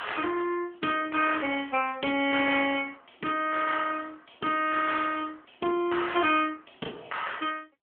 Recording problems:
telephone audio; 220 Hz to 3.3 kHz, AMR-NB

